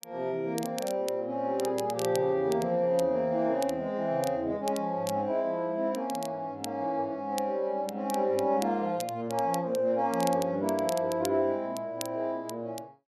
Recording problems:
crackle; vinyl, SNR 15 dB

